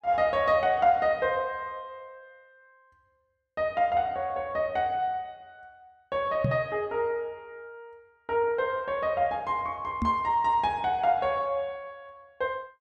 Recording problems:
knock on the microphone; at 6.5 s and at 10 s; peak +4 dB vs average level

